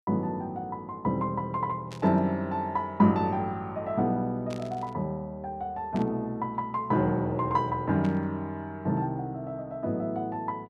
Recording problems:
burst of static; 4 times, first at 2 s; peak -10 dB vs average level

